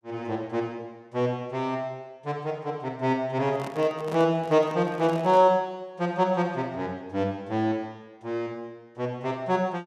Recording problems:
microphone handling noise; from 3.5 to 5.5 s; peak -7 dB vs average level

